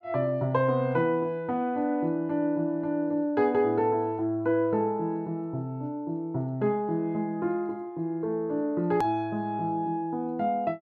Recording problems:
hard cut with a click; at 9 s

